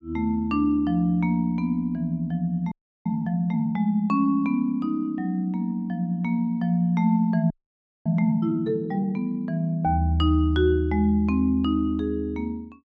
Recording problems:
audio freezing; at 2.5 s and at 7.5 s for 0.5 s

